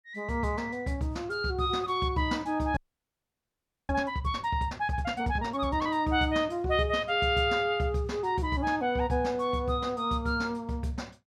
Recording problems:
audio freezing; at 3 s for 1 s

